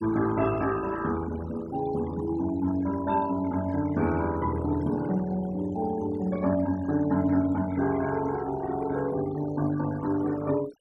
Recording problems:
noise reduction artefacts; signal-to-artefact ratio 16 dB

